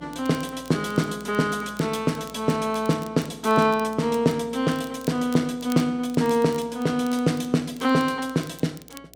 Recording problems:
electrical hum; 60 Hz, harmonics up to 720 Hz, SNR 27 dB
crackling; vinyl, SNR 23 dB

